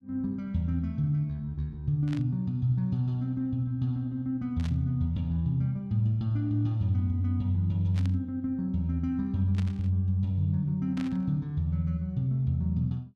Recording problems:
burst of static; 5 times, first at 2 s; peak -10 dB vs average level

